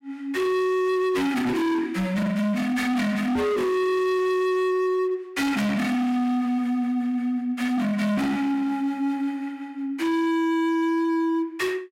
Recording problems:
distortion; hard clipping, signal-to-distortion ratio 6 dB

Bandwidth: 16 kHz